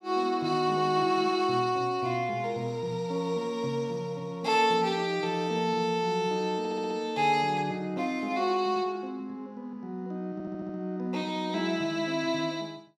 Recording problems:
audio stuttering; at 6.5 s and at 10 s

